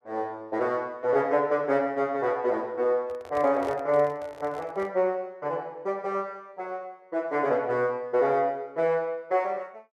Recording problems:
microphone handling noise; from 3 to 5 s; peak -8 dB vs average level

